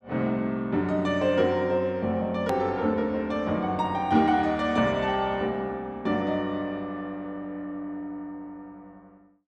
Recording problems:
hard cut with a click; at 2.5 s

